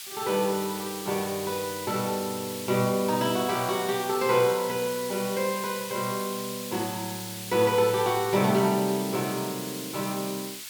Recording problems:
background hiss; SNR 9 dB

